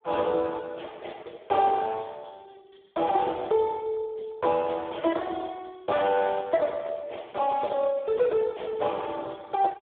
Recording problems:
telephone audio; 300 Hz to 2 kHz, Speex

